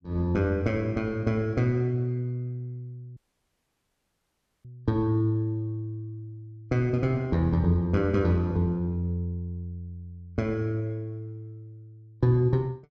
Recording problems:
dropout; at 3 s for 1.5 s

